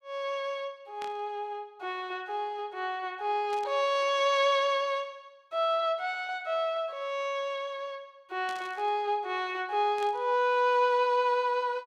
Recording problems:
burst of static; 4 times, first at 1 s; peak -11 dB vs average level

